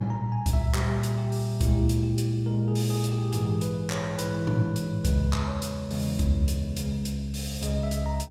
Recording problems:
electrical hum; 60 Hz, harmonics up to 480 Hz, SNR 27 dB

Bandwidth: 16 kHz